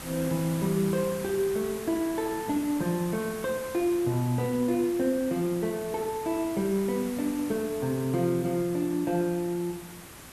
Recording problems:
background hiss; slope -3 dB per octave, SNR 13 dB

